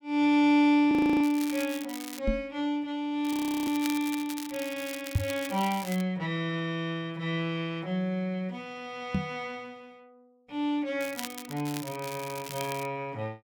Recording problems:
frozen audio; at 1 s and at 3.5 s
crackling; at 1 s, from 3 to 6 s and from 11 to 13 s; loose cable, SNR 12 dB
microphone bump; at 2.5 s, at 5 s and at 9 s; peak +7 dB vs average level

